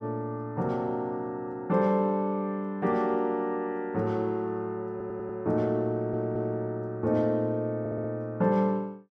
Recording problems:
audio stuttering; at 5 s, at 6 s and at 8 s

